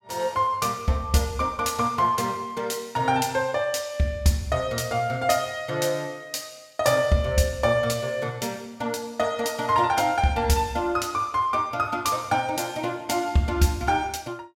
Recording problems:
none

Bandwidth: 16 kHz